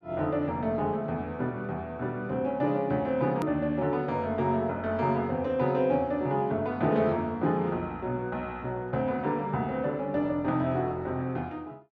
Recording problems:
hard cut with a click; at 3.5 s

